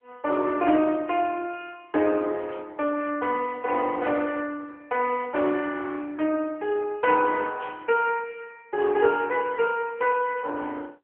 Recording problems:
telephone audio; 260 Hz to 3.3 kHz, AMR-NB
burst of static; at 2.5 s and at 7.5 s; peak -14 dB vs average level

